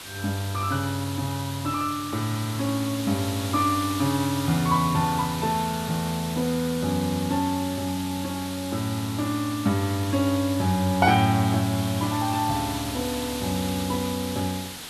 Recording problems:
background hiss; slope 0 dB per octave, SNR 9 dB

